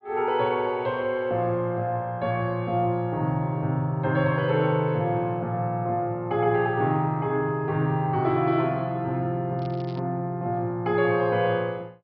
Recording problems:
treble missing; nothing above 5.5 kHz
crackle; at 9.5 s; loose cable, SNR 27 dB

